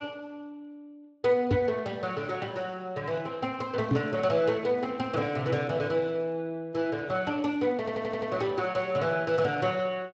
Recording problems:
lossy codec; Speex, log-spectral distance 3 dB
microphone thump; at 1.5 s and at 4 s; peak +6 dB vs average level
stutter; at 8 s

